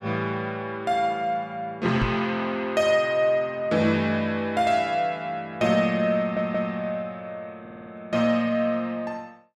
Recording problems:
microphone thump; at 2 s; peak +2 dB vs average level
audio stuttering; at 6 s and at 7.5 s

